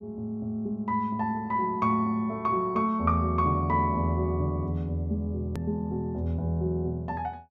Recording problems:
click at an edit; at 5.5 s

